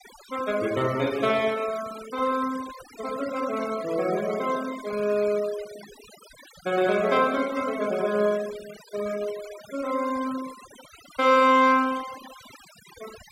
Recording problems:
noise reduction artefacts; signal-to-artefact ratio 17 dB

